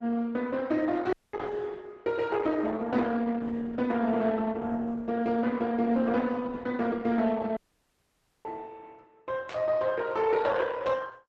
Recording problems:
lossy compression; Opus, log-spectral distance 3 dB
dropout; at 1 s and at 7.5 s for 1 s
burst of static; at 9.5 s; peak -9 dB vs average level

